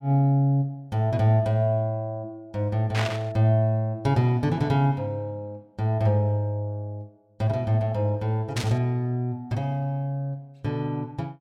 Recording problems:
burst of static; at 3 s and at 8.5 s; peak 0 dB vs average level

